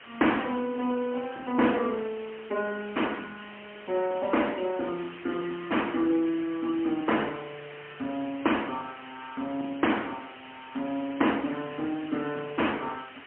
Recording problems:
telephone audio; 240 Hz to 3.2 kHz, AMR-NB, then MP3
background hiss; SNR 16 dB

